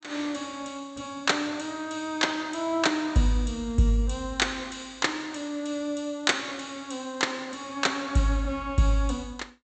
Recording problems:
treble missing; nothing above 8 kHz

